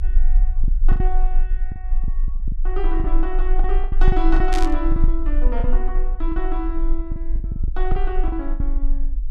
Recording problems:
rumble; below 32 Hz, strongest tone 22 Hz, SNR -5 dB
lost packets; 11% of the sound replaced, filled with the last packet
static burst; at 4.5 s; peak +2 dB vs average level

